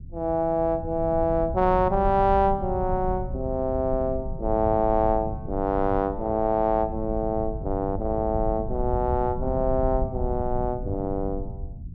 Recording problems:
low-frequency rumble; below 110 Hz, SNR 9 dB

